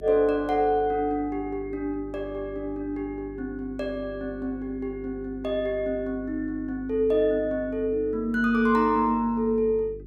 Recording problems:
hum; 50 Hz, harmonics up to 400 Hz, SNR 18 dB

